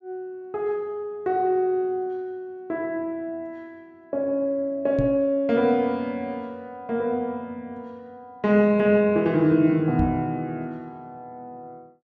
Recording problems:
knock on the microphone; at 5 s and at 10 s; peak +1 dB vs average level

